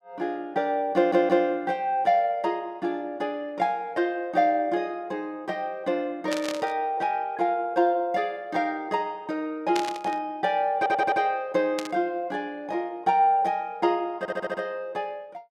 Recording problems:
stutter; at 1 s, at 11 s and at 14 s
static burst; at 6.5 s, at 10 s and at 12 s; peak -1 dB vs average level

